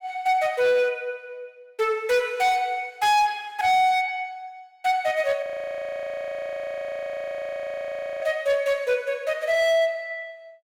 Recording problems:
distorted audio; hard clipping, signal-to-distortion ratio 11 dB
frozen audio; at 5.5 s for 3 s

